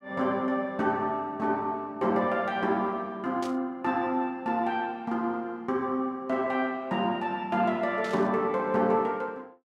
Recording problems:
static burst; at 3.5 s and at 8 s; peak -10 dB vs average level

